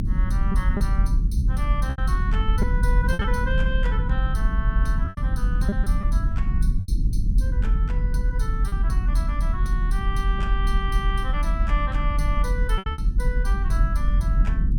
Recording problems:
low-frequency rumble; below 58 Hz, strongest tone 38 Hz, SNR -8 dB
lost packets; 4% of the sound replaced, filled with repeated pitch periods

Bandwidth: 17 kHz